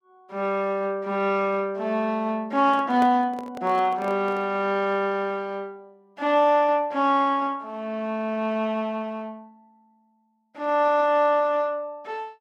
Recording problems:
handling noise; from 2.5 to 4.5 s; peak -4 dB vs average level

